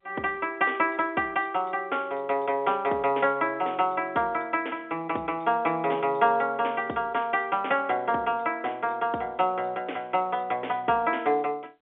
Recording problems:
phone line; 280 Hz to 3.3 kHz, G.711

